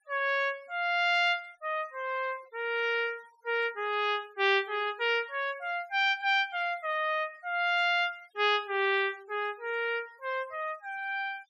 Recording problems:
denoising artefacts; signal-to-artefact ratio 25 dB

